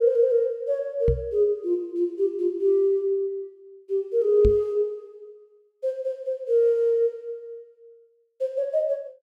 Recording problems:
microphone bump; at 1 s and at 4.5 s; peak +3 dB vs average level

